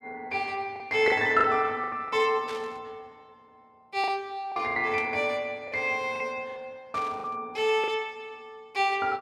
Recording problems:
packet loss; 7% of the sound replaced, filled with the last packet
static burst; at 2.5 s, at 5 s and at 7 s; peak -10 dB vs average level

